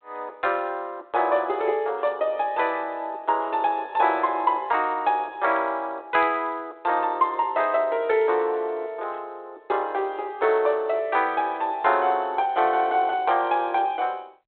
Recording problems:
telephone audio; 280 Hz to 4 kHz, G.726

